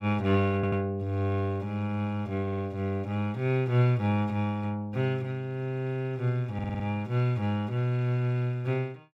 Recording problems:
audio stuttering; at 0.5 s, at 2.5 s and at 6.5 s

